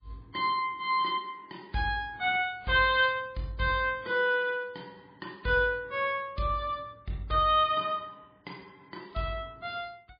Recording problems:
lossy codec; MP3, log-spectral distance 3 dB, nothing above 4.1 kHz

